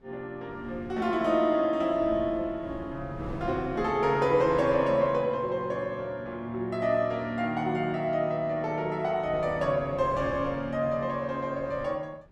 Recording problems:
wind noise; below 320 Hz, SNR 17 dB

